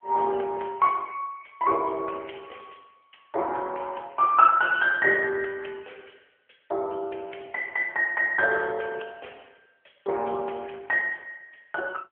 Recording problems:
phone line; 340 Hz to 3 kHz, AMR-NB

